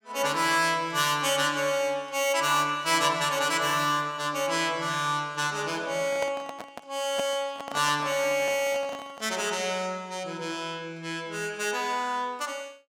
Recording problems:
microphone handling noise; from 6 to 9.5 s; peak -3 dB vs average level

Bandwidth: 17 kHz